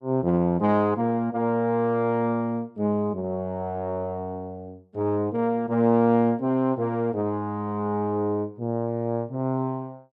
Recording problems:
none

